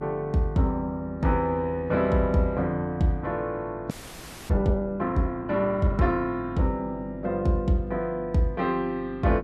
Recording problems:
electrical hum; 50 Hz, harmonics up to 350 Hz, SNR 16 dB
frozen audio; at 4 s for 0.5 s

